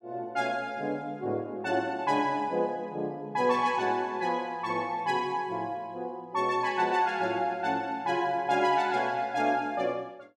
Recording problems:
none

